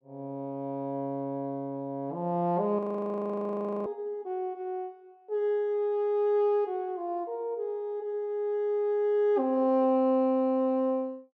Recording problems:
frozen audio; at 3 s for 1 s

